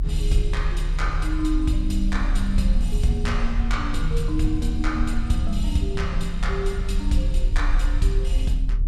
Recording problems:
rumble; below 46 Hz, strongest tone 36 Hz, SNR -1 dB

